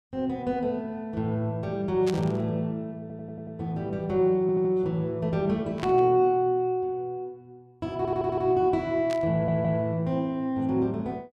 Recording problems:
burst of static; at 2 s, at 6 s and at 9 s; peak -6 dB vs average level
stutter; 4 times, first at 3 s

